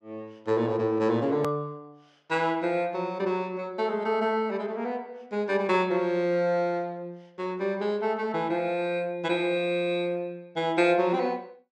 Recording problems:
edit click; at 1.5 s

